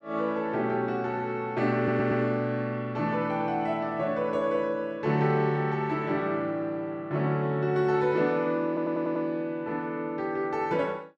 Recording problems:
audio stuttering; at 2 s and at 8.5 s

